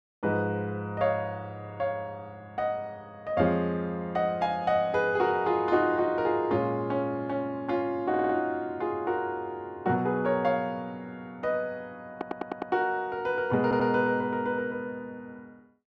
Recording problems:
stutter; at 8 s, at 12 s and at 14 s

